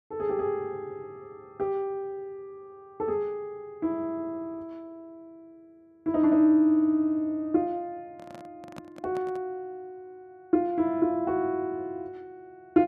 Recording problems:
microphone handling noise; from 8 to 9.5 s; peak -11 dB vs average level

